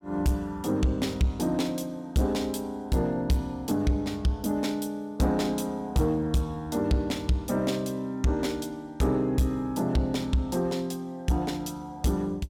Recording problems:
distortion; soft clipping, signal-to-distortion ratio 11 dB

